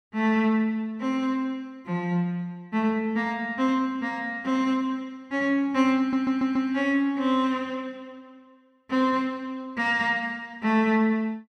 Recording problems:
stutter; at 6 s

